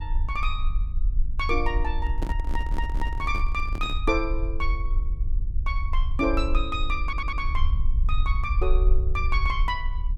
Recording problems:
low-frequency rumble; below 54 Hz, strongest tone 24 Hz, SNR -2 dB
microphone handling noise; from 2 to 4 s; peak 0 dB vs average level
audio stuttering; at 2.5 s and at 7 s

